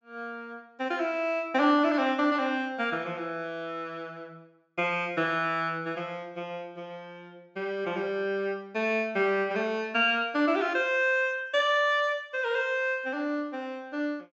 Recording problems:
low-pass filter; nothing above 8 kHz

